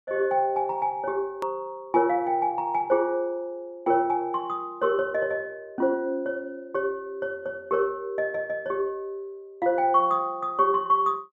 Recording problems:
click at an edit; at 1.5 s

